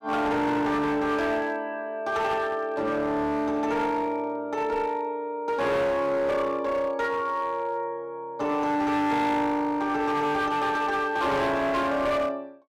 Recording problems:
distortion; hard clipping, signal-to-distortion ratio 10 dB

